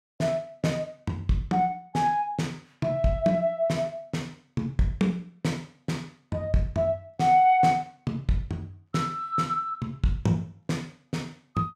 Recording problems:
none

